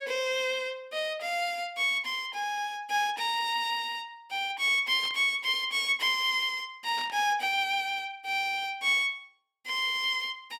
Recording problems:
burst of static; at 5 s and at 7 s; peak -10 dB vs average level

